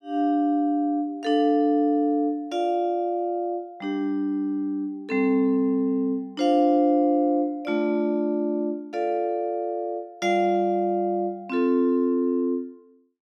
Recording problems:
none

